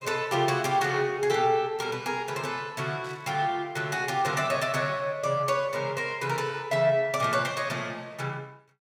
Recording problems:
static burst; at 3 s; peak -16 dB vs average level

